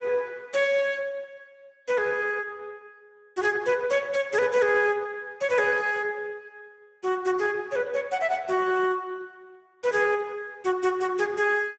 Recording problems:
lossy compression; Speex, log-spectral distance 3 dB, nothing above 7.6 kHz

